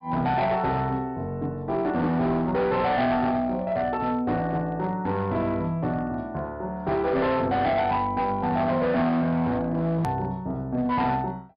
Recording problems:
low-pass filter; nothing above 5.1 kHz
distortion; hard clipping, signal-to-distortion ratio 11 dB
hard cut with a click; at 10 s

